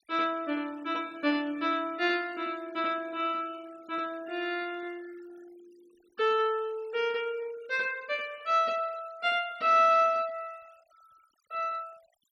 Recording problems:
denoising artefacts; signal-to-artefact ratio 26 dB

